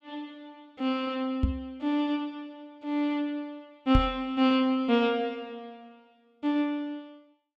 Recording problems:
microphone thump; at 1.5 s and at 4 s; peak +7 dB vs average level

